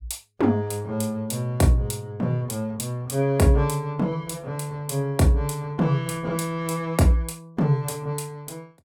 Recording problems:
none

